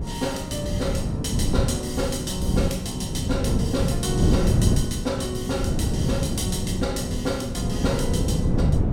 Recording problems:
wind noise; below 210 Hz, SNR -2 dB

